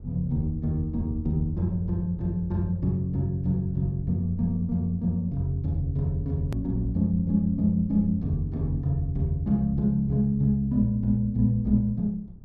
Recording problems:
rumble; below 110 Hz, SNR 19 dB
click at an edit; at 6.5 s

